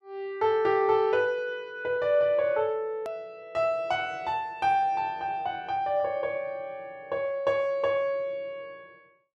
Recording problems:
edit click; at 3 s

